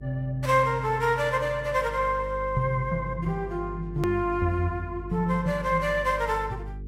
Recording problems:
electrical hum; 50 Hz, harmonics up to 450 Hz, SNR 13 dB
edit click; at 4 s

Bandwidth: 16 kHz